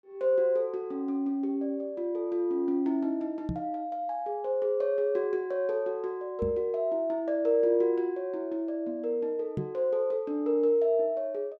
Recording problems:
microphone thump; at 3.5 s, at 6.5 s and at 9.5 s; peak -1 dB vs average level

